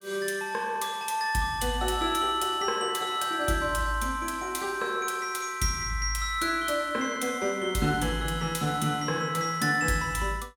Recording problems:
none

